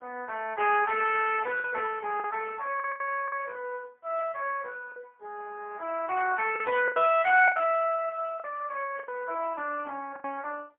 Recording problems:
telephone audio; 320 Hz to 2.9 kHz, AMR-NB, then MP3
lost packets; 6% of the sound replaced, filled with the last packet

